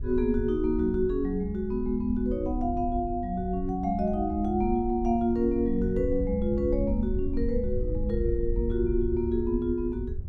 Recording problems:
wind noise; below 74 Hz, SNR 7 dB

